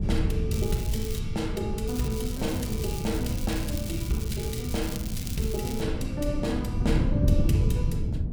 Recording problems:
mains hum; 60 Hz, harmonics up to 1.1 kHz, SNR 24 dB
wind noise; below 140 Hz, SNR -2 dB
crackling; at 0.5 s and from 2 to 6 s; loose cable, SNR 8 dB

